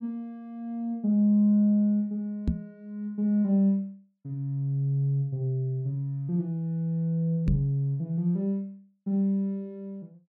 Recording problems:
microphone bump; at 2.5 s and at 7.5 s; peak +4 dB vs average level

